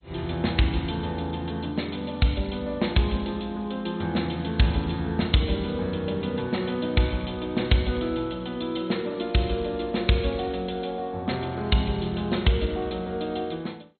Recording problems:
lossy compression; MP2, log-spectral distance 6 dB, nothing above 4.2 kHz

